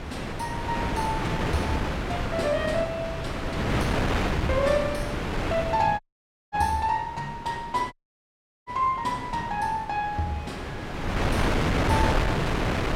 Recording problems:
wind noise; below 1.2 kHz, SNR -1 dB
audio cutting out; at 6 s for 0.5 s and at 8 s for 0.5 s

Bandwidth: 16.5 kHz